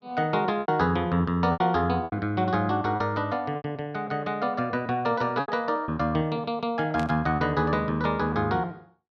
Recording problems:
lost packets; 6% of the sound replaced, filled with repeated pitch periods
static burst; at 7 s; peak -8 dB vs average level

